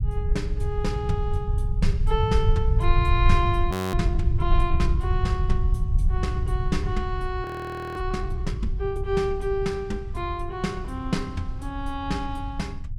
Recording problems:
low-frequency rumble; below 88 Hz, SNR -2 dB
audio freezing; at 3.5 s and at 7.5 s for 0.5 s

